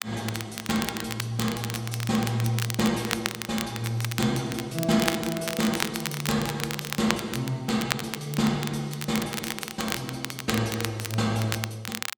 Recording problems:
crackle; vinyl, SNR 5 dB

